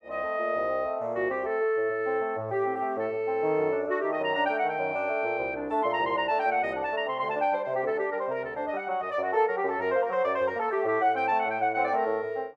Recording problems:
none

